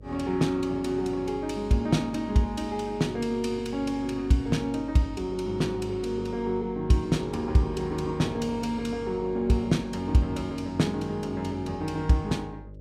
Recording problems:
mains hum; 50 Hz, harmonics up to 600 Hz, SNR 17 dB

